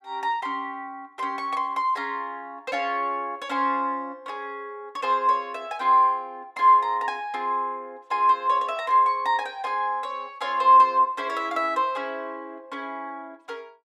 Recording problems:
none

